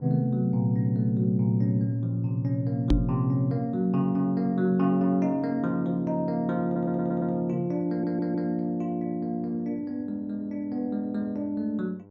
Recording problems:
hum; 50 Hz, harmonics up to 1.1 kHz, SNR 25 dB
microphone bump; at 3 s; peak +7 dB vs average level
audio stuttering; at 6.5 s and at 8 s

